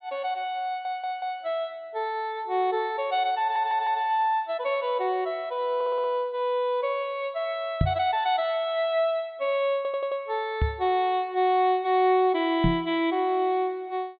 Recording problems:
treble missing; nothing above 4.4 kHz
audio stuttering; 4 times, first at 0.5 s
microphone thump; at 8 s, at 11 s and at 13 s; peak +6 dB vs average level

